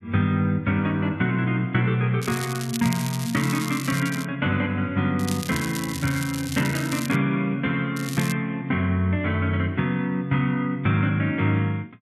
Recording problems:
crackling; from 2 to 4.5 s, from 5 to 7 s and at 8 s; loose cable, SNR 11 dB

